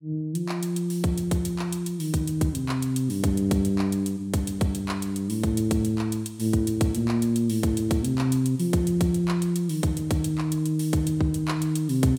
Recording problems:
none

